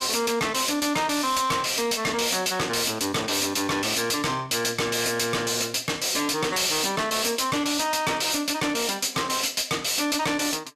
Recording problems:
distortion; hard clipping, signal-to-distortion ratio 7 dB

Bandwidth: 14.5 kHz